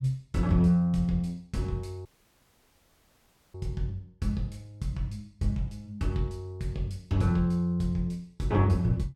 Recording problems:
dropout; at 2 s for 1.5 s

